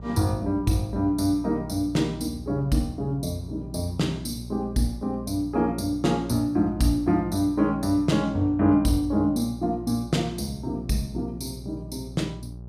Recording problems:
electrical hum; 60 Hz, harmonics up to 600 Hz, SNR 14 dB

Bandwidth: 15 kHz